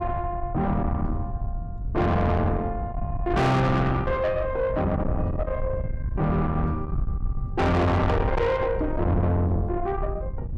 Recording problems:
distorted audio; soft clipping, signal-to-distortion ratio 6 dB
wind on the microphone; below 150 Hz, SNR 6 dB

